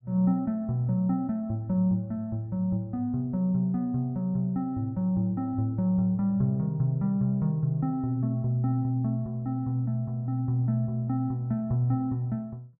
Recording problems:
none

